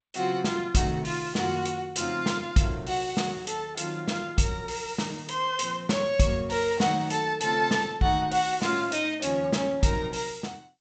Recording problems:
lossy compression; G.722, log-spectral distance 6 dB, nothing above 7.8 kHz

